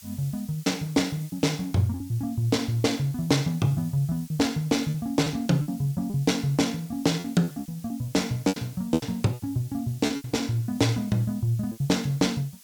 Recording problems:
background hiss; slope +3 dB per octave, SNR 21 dB
packet loss; 10% of the sound replaced, filled with repeated pitch periods

